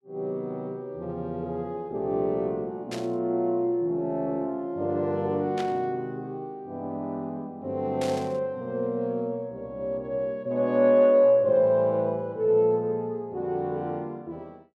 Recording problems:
static burst; at 3 s, at 5.5 s and at 8 s; peak -7 dB vs average level

